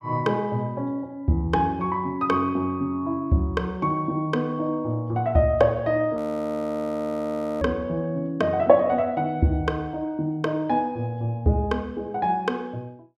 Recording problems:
audio freezing; at 6 s for 1.5 s

